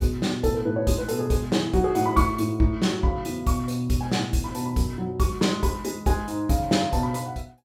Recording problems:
none

